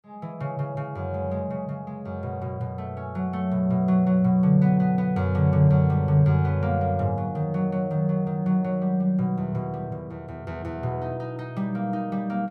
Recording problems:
none

